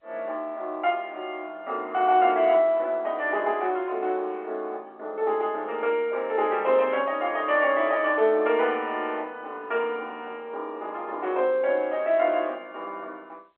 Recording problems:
phone line; 320 Hz to 3.4 kHz, G.711

